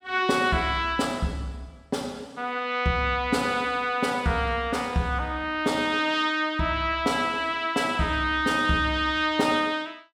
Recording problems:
none

